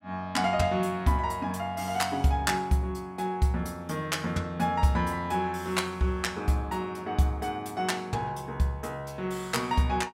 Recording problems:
none

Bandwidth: 16 kHz